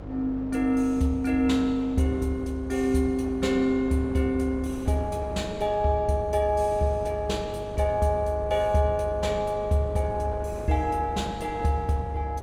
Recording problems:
hum; 50 Hz, harmonics up to 550 Hz, SNR 16 dB
wind noise; below 600 Hz, SNR 17 dB

